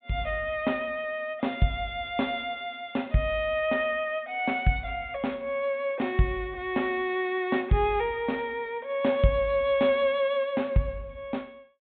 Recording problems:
low-pass filter; nothing above 4 kHz

